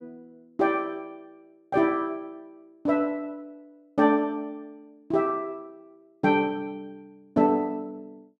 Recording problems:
none

